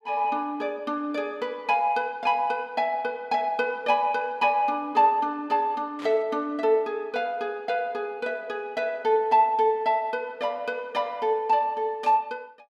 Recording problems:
static burst; at 6 s and at 12 s; peak -12 dB vs average level

